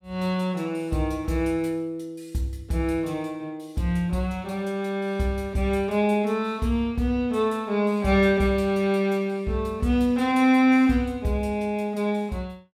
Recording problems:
none

